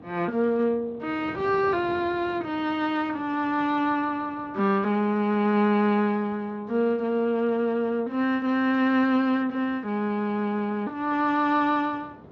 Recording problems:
codec artefacts; Speex, log-spectral distance 2 dB
wind on the microphone; below 610 Hz, SNR 20 dB

